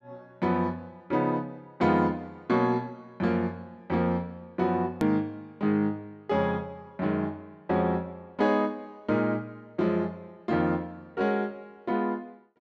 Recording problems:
hard cut with a click; at 5 s

